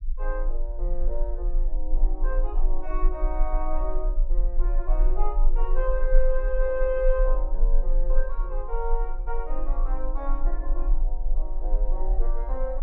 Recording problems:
rumble; below 32 Hz, strongest tone 20 Hz, SNR -5 dB

